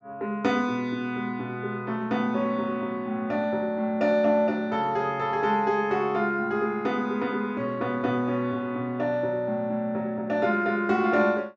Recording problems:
treble cut off; nothing above 8 kHz

